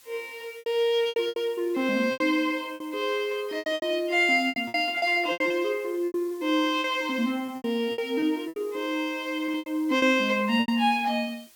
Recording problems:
hiss; slope +2 dB per octave, SNR 26 dB
packet loss; 13% of the sound replaced, filled with repeated pitch periods

